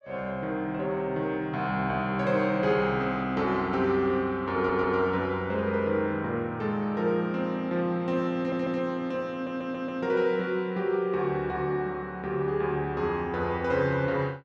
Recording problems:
stutter; at 4.5 s, at 8.5 s and at 9.5 s

